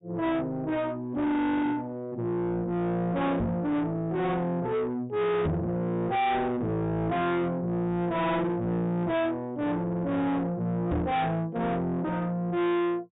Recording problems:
treble missing; nothing above 4 kHz
distorted audio; soft clipping, signal-to-distortion ratio 6 dB
knock on the microphone; at 3.5 s, at 5.5 s and at 11 s; peak +4 dB vs average level

